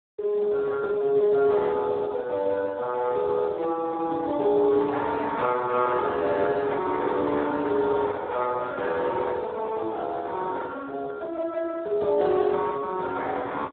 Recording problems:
telephone audio; 320 Hz to 2 kHz, Speex

